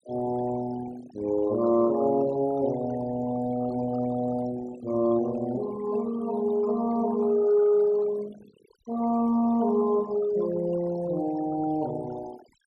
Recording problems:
denoising artefacts; signal-to-artefact ratio 17 dB

